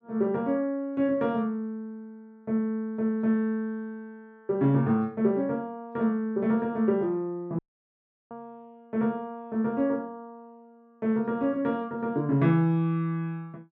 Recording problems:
dropout; at 7.5 s for 0.5 s

